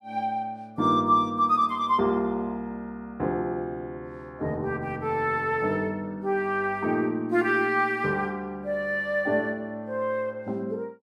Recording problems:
none

